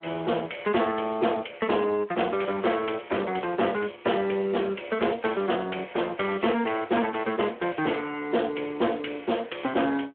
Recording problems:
phone line; 260 Hz to 3.3 kHz, Speex
distorted audio; hard clipping, signal-to-distortion ratio 13 dB

